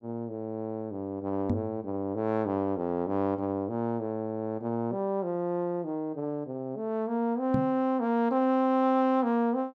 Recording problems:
microphone thump; at 1.5 s and at 7.5 s; peak +5 dB vs average level

